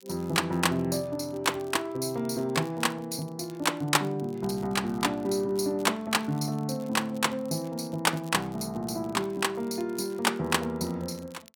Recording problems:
crackle; vinyl, SNR 26 dB

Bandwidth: 17 kHz